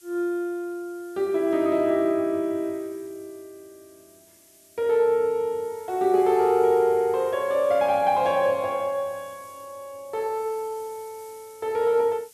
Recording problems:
hiss; SNR 27 dB

